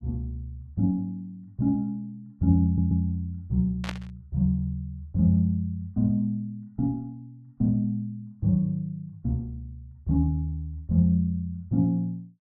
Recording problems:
audio stuttering; at 2.5 s
burst of static; at 4 s; peak -3 dB vs average level

